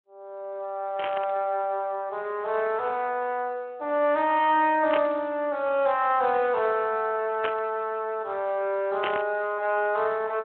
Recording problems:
phone line; 300 Hz to 3.4 kHz, Speex
burst of static; 4 times, first at 1 s; peak -1 dB vs average level

